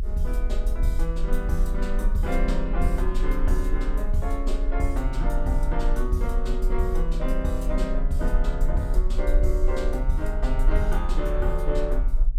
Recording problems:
low-frequency rumble; below 40 Hz, strongest tone 24 Hz, SNR -2 dB

